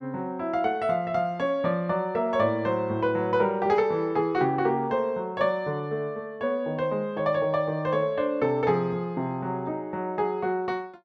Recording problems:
none

